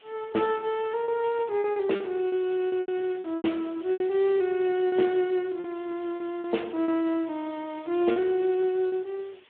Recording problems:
telephone audio; 260 Hz to 3.5 kHz, Speex
background hiss; SNR 27 dB
lost packets; 9% of the sound replaced, filled with repeated pitch periods

